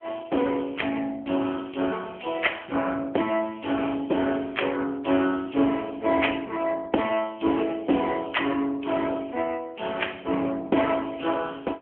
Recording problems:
telephone audio; 220 Hz to 3.3 kHz, AMR-NB

